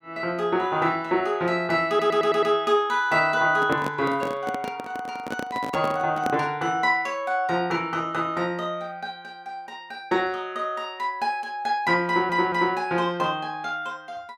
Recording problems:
audio stuttering; at 2 s and at 12 s
microphone handling noise; from 3.5 to 6.5 s; peak 0 dB vs average level

